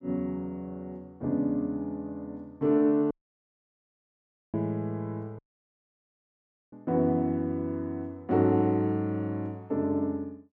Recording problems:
dropout; at 3 s for 1.5 s and at 5.5 s for 1.5 s

